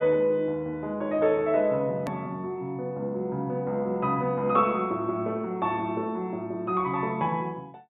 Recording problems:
treble missing; nothing above 4 kHz
edit click; at 2 s

